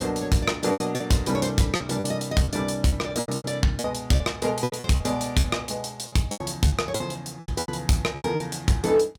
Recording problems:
distorted audio; hard clipping, uneven, signal-to-distortion ratio 11 dB
packet loss; 13% of the sound replaced, filled with repeated pitch periods

